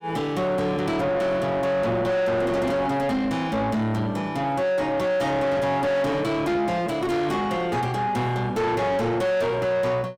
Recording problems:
distorted audio; soft clipping, signal-to-distortion ratio 5 dB

